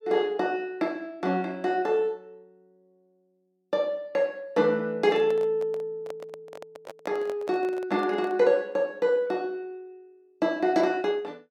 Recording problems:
microphone handling noise; from 5 to 8.5 s; peak -8 dB vs average level

